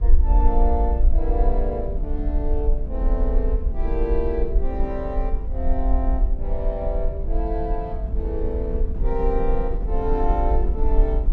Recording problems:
rumble; below 50 Hz, strongest tone 24 Hz, SNR -3 dB
wind noise; below 170 Hz, SNR 8 dB

